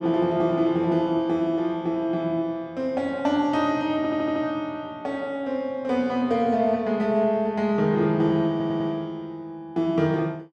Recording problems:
stutter; at 4 s and at 8.5 s

